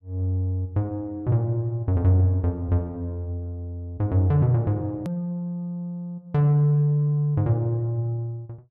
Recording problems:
click at an edit; at 5 s

